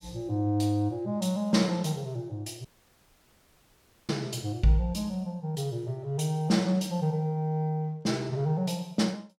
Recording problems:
audio cutting out; at 2.5 s for 1.5 s

